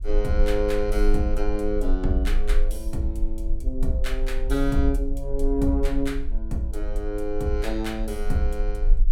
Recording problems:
rumble; below 38 Hz, SNR 2 dB

